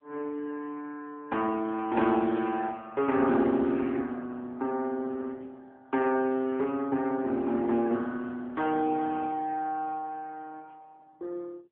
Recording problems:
telephone audio; 220 Hz to 2.7 kHz, AMR-NB

